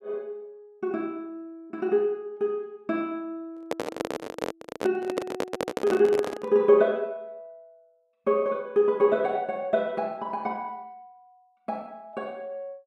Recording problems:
handling noise; from 3.5 to 6.5 s; peak +2 dB vs average level

